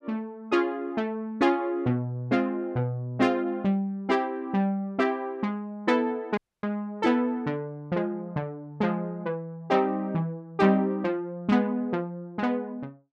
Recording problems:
dropout; at 6.5 s

